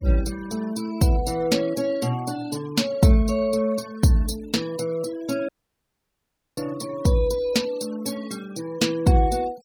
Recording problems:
denoising artefacts; signal-to-artefact ratio 19 dB
dropout; at 5.5 s for 1 s

